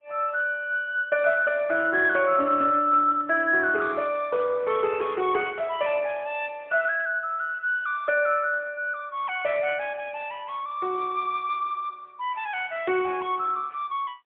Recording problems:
phone line; 320 Hz to 3.3 kHz, AMR-NB, then MP3

